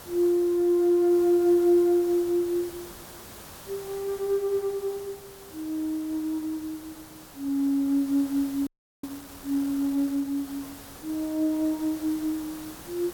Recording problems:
hiss; slope -4 dB per octave, SNR 18 dB
audio freezing; at 8.5 s

